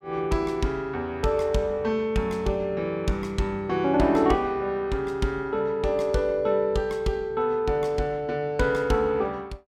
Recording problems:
none

